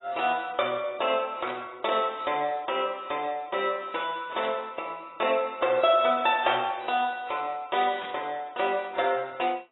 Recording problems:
lossy codec; AAC, log-spectral distance 4 dB, nothing above 3.7 kHz
static burst; at 1.5 s, at 4.5 s and at 8 s; peak -9 dB vs average level

